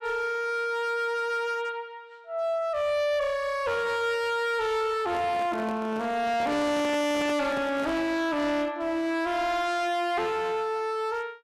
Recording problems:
distortion; hard clipping, signal-to-distortion ratio 7 dB
microphone handling noise; from 5 to 8 s; peak -6 dB vs average level

